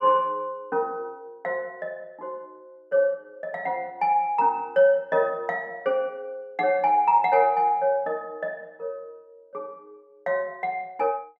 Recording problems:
none

